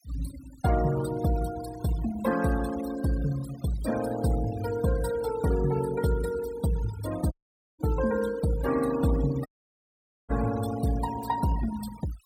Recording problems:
noise reduction artefacts; signal-to-artefact ratio 14 dB
dropout; at 7.5 s and at 9.5 s for 1 s

